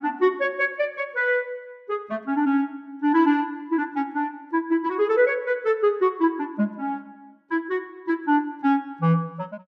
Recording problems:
none

